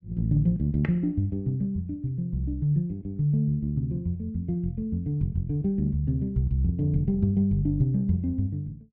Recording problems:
none

